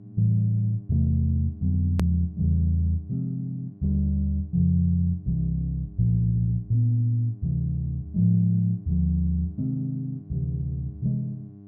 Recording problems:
hum; 50 Hz, harmonics up to 700 Hz, SNR 22 dB
hard cut with a click; at 2 s

